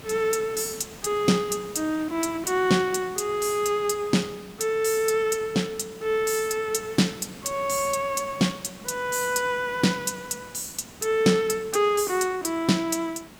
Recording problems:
background hiss; slope -4 dB per octave, SNR 19 dB

